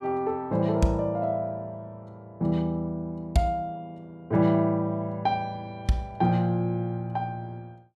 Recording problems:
none

